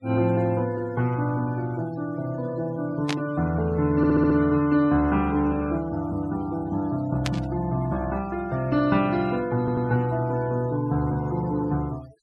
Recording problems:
denoising artefacts; signal-to-artefact ratio 24 dB
burst of static; at 3 s and at 7.5 s; peak 0 dB vs average level
stutter; at 4 s and at 9.5 s

